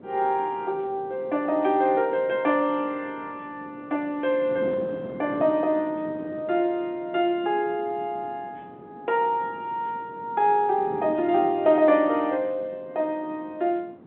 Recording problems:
phone line; 220 Hz to 3.7 kHz, G.711
wind on the microphone; below 480 Hz, SNR 18 dB

